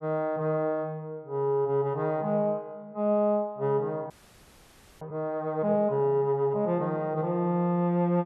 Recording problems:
frozen audio; at 4 s for 1 s

